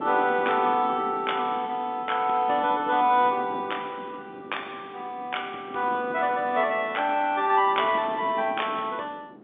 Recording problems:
telephone audio; 260 Hz to 3.6 kHz, G.711
wind on the microphone; below 460 Hz, SNR 17 dB

